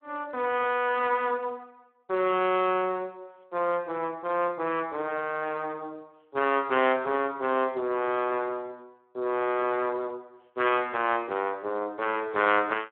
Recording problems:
phone line; 280 Hz to 3.4 kHz, Speex

